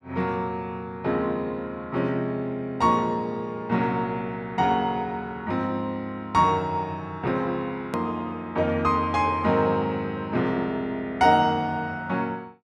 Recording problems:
hard cut with a click; at 8 s

